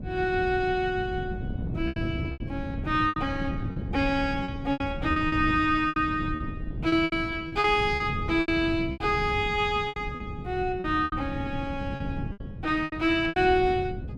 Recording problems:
wind on the microphone; below 200 Hz, SNR 8 dB
lost packets; 11% of the sound replaced, filled with repeated pitch periods

